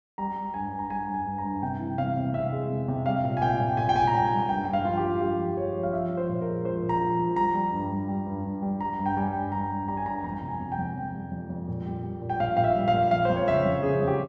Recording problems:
none

